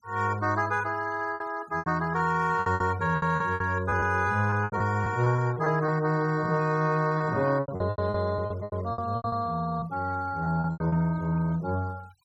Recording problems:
noise reduction artefacts; signal-to-artefact ratio 24 dB
packet loss; 12% of the sound replaced, filled with repeated pitch periods

